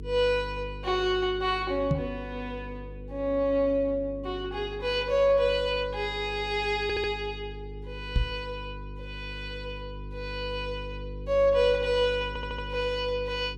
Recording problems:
mains hum; 50 Hz, harmonics up to 450 Hz, SNR 13 dB
microphone bump; at 2 s and at 8 s; peak +6 dB vs average level
audio stuttering; at 7 s and at 12 s

